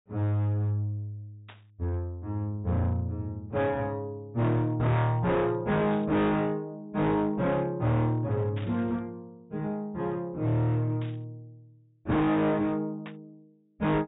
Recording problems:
low-pass filter; nothing above 4 kHz
distortion; hard clipping, signal-to-distortion ratio 7 dB
static burst; 5 times, first at 1.5 s; peak -11 dB vs average level

